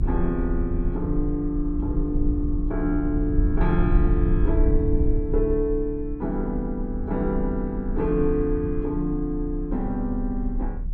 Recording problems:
rumble; below 64 Hz, SNR 2 dB

